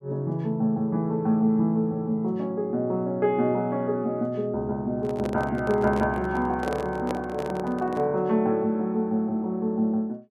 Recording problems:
handling noise; from 5 to 8 s; peak -2 dB vs average level

